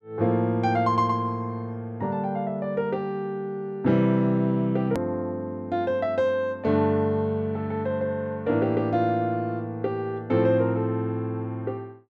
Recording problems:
hard cut with a click; at 5 s

